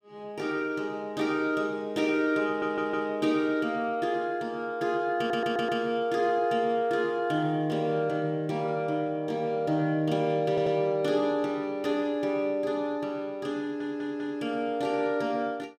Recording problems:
audio stuttering; 4 times, first at 2.5 s

